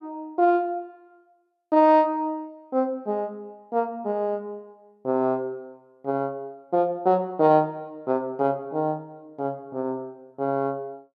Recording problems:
none

